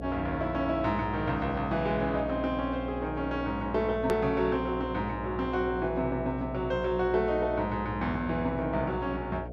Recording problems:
hum; 60 Hz, harmonics up to 720 Hz, SNR 9 dB
edit click; at 4 s

